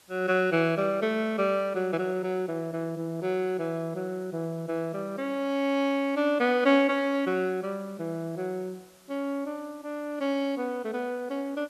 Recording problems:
hiss; slope -1 dB per octave, SNR 28 dB

